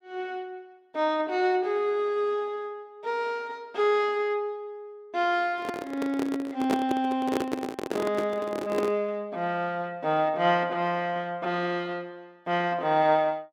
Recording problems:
microphone handling noise; from 5.5 to 9 s; peak +3 dB vs average level

